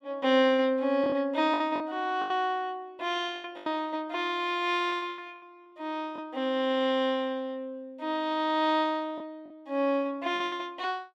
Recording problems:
lost packets; 7% of the sound replaced, filled with the last packet

